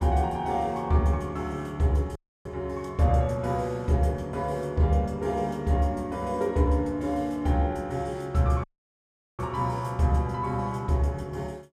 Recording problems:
audio cutting out; at 2 s and at 8.5 s for 1 s

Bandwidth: 15.5 kHz